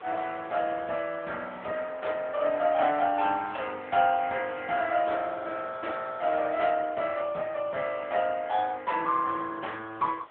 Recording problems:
telephone audio; 300 Hz to 3.4 kHz, AMR-NB
background hiss; SNR 22 dB

